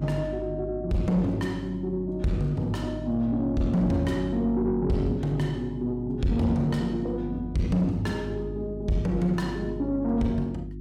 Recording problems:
distorted audio; soft clipping, signal-to-distortion ratio 12 dB
hum; 50 Hz, harmonics up to 350 Hz, SNR 10 dB

